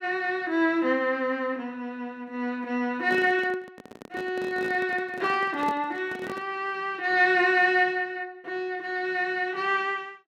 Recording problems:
microphone handling noise; from 3 to 6.5 s; peak -4 dB vs average level

